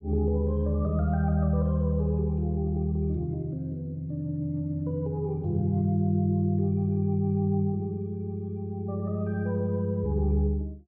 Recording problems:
none

